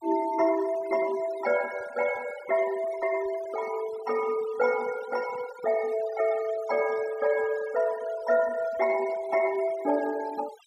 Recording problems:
noise reduction artefacts; signal-to-artefact ratio 18 dB

